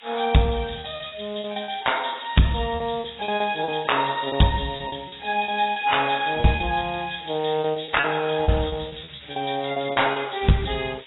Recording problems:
lossy codec; AAC, log-spectral distance 19 dB, nothing above 3.8 kHz
distortion; hard clipping, uneven, signal-to-distortion ratio 11 dB
hiss; SNR 21 dB
packet loss; 12% of the sound replaced, filled with repeated pitch periods

